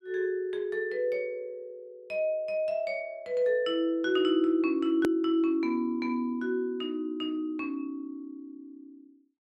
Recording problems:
edit click; at 5 s

